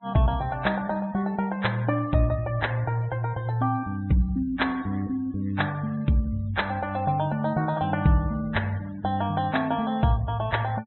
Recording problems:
treble cut off; nothing above 4.1 kHz
denoising artefacts; signal-to-artefact ratio 24 dB

